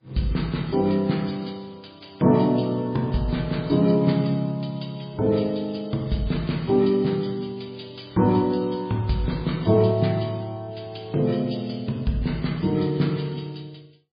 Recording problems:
lossy codec; MP3, log-spectral distance 4 dB, nothing above 4.8 kHz

